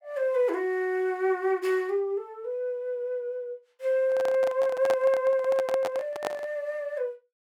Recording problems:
microphone handling noise; from 4 to 6.5 s; peak 0 dB vs average level

